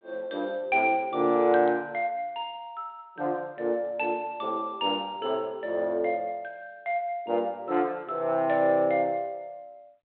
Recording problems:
phone line; 240 Hz to 3.5 kHz, G.726

